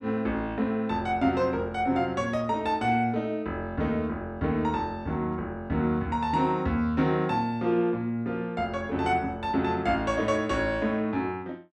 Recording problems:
none

